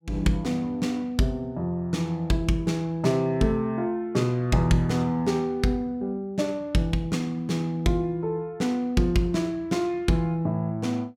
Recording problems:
none

